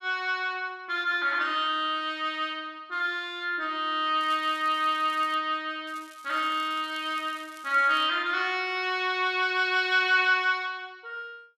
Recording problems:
crackling; from 4 to 5.5 s and from 6 to 8 s; loose cable, SNR 26 dB

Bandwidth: 12.5 kHz